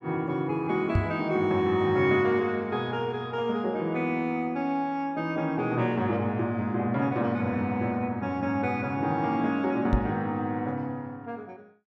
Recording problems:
microphone thump; at 1 s and at 10 s; peak +5 dB vs average level

